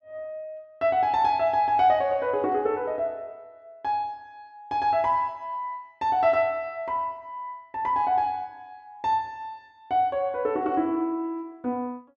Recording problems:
none

